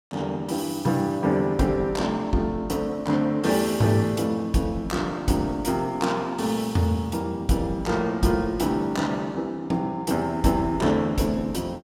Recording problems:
none

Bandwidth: 17 kHz